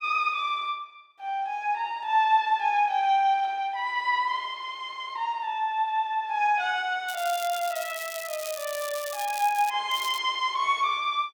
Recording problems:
crackle; from 7 to 9.5 s and at 10 s; loose cable, SNR 12 dB

